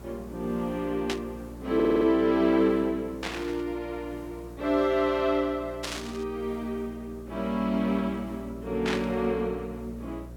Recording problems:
mains hum; 60 Hz, harmonics up to 660 Hz, SNR 17 dB
hiss; slope -6 dB per octave, SNR 24 dB
burst of static; 4 times, first at 1 s; peak 0 dB vs average level
stutter; at 2 s

